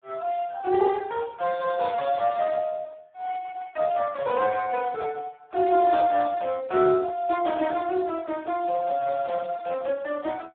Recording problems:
telephone audio; 300 Hz to 2.1 kHz, Speex

